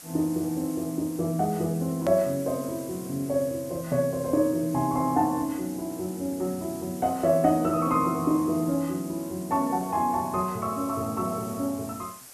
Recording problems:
hiss; SNR 17 dB
click at an edit; at 2 s

